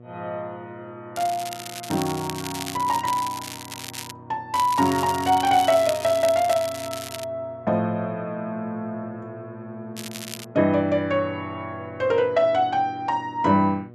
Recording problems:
hum; 60 Hz, harmonics up to 1.2 kHz, SNR 22 dB
crackling; from 1 to 4 s, from 4.5 to 7 s and at 10 s; loose cable, SNR 11 dB

